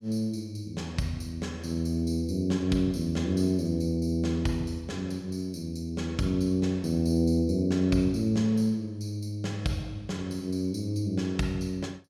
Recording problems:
none

